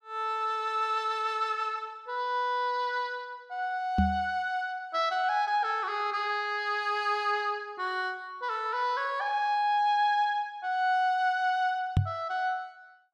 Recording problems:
microphone thump; at 4 s and at 12 s; peak +7 dB vs average level

